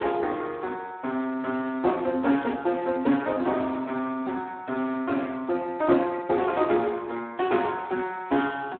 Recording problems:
telephone audio; 190 Hz to 3.9 kHz, Speex

